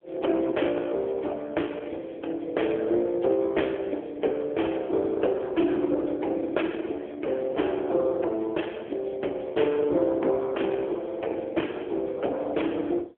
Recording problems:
phone line; 260 Hz to 3.4 kHz, AMR-NB

